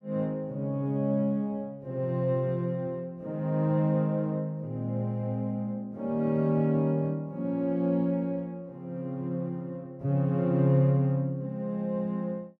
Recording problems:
none

